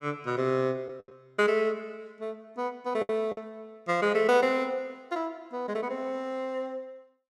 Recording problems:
lost packets; 3% of the sound replaced, filled with the last packet

